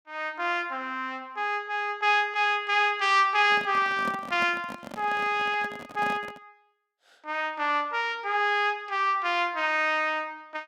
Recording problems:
microphone handling noise; from 3.5 to 6.5 s; peak -5 dB vs average level

